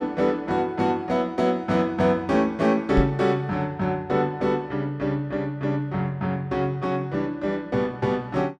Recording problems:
knock on the microphone; at 3 s; peak +4 dB vs average level

